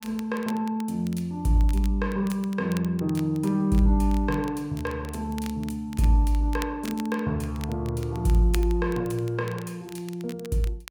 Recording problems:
crackle; vinyl, SNR 19 dB

